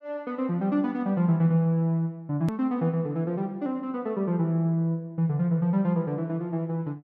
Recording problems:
edit click; at 2.5 s

